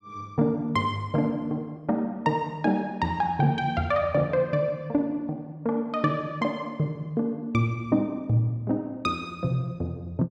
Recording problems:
none

